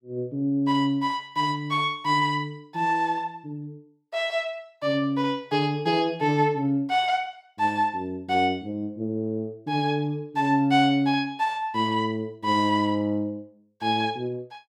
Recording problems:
none

